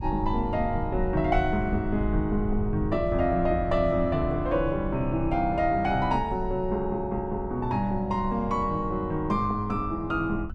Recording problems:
low-frequency rumble; below 94 Hz, SNR 9 dB

